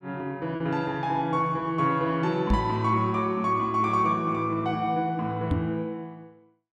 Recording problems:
packet loss; 0.6% of the sound replaced, filled with repeated pitch periods
knock on the microphone; at 2.5 s and at 5.5 s; peak +6 dB vs average level

